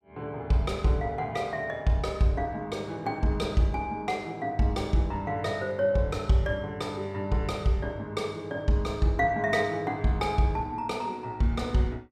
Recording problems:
none

